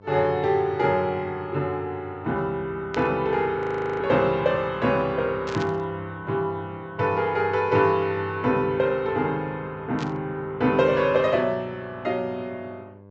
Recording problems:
low-pass filter; nothing above 8 kHz
hum; 50 Hz, harmonics up to 1.1 kHz, SNR 23 dB
static burst; at 3 s, at 5.5 s and at 10 s; peak -6 dB vs average level
frozen audio; at 3.5 s

